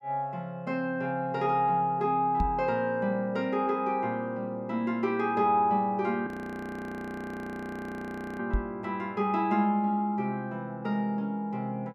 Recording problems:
microphone bump; at 2.5 s and at 8.5 s; peak +3 dB vs average level
audio freezing; at 6.5 s for 2 s

